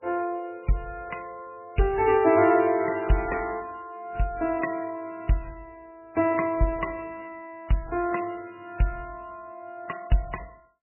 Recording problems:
lossy compression; AAC, then MP3, log-spectral distance 3 dB, nothing above 2.7 kHz

